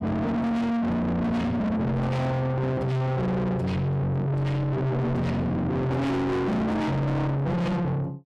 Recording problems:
distortion; soft clipping, signal-to-distortion ratio 7 dB

